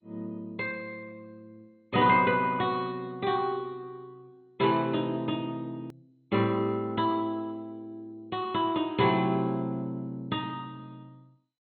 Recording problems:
codec artefacts; MP2, log-spectral distance 2 dB, nothing above 3.5 kHz
hard cut with a click; at 6 s

